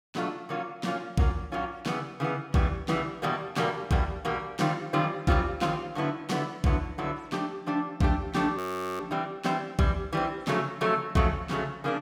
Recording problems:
audio freezing; at 8.5 s

